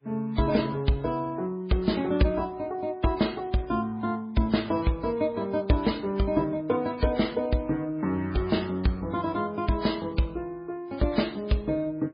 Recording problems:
lossy codec; MP3, then MP3, log-spectral distance 3 dB, nothing above 4.9 kHz

